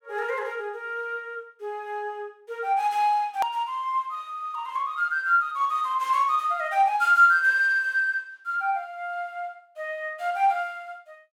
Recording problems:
hard cut with a click; at 3.5 s

